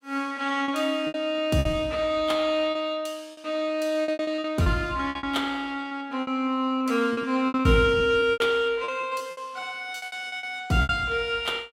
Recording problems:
lost packets; 14% of the sound replaced, filled with repeated pitch periods

